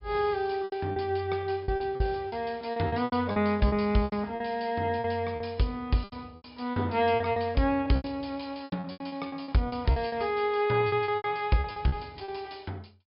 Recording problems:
low-pass filter; nothing above 5.5 kHz
packet loss; 14% of the sound replaced, filled with repeated pitch periods

